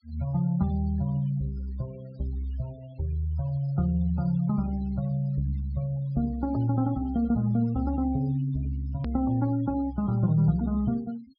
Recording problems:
low-pass filter; nothing above 5.5 kHz
noise reduction artefacts; signal-to-artefact ratio 24 dB
hard cut with a click; at 9 s

